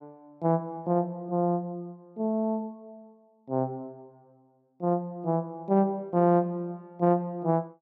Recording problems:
none

